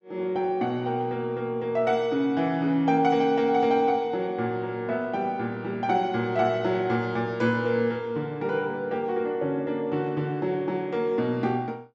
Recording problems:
treble missing; nothing above 8 kHz

